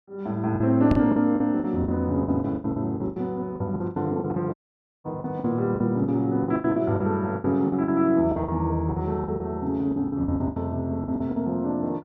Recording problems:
packet loss; 16% of the sound replaced, filled with the last packet
microphone bump; at 1 s; peak +2 dB vs average level
dropout; at 4.5 s for 0.5 s

